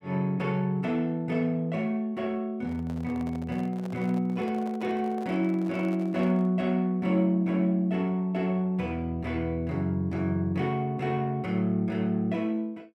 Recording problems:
microphone handling noise; from 2.5 to 6.5 s; peak -11 dB vs average level

